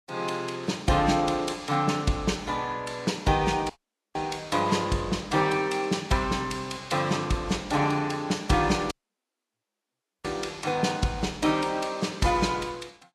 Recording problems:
codec artefacts; Vorbis, log-spectral distance 4 dB, nothing above 12.3 kHz
dropout; at 3.5 s and at 9 s for 1.5 s

